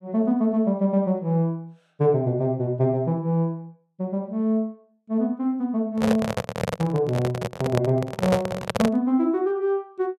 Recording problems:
microphone handling noise; from 6 to 9 s; peak +4 dB vs average level

